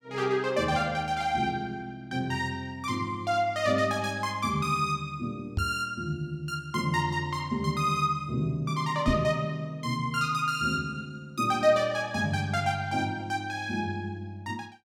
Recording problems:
microphone bump; at 5.5 s and at 9 s; peak +4 dB vs average level

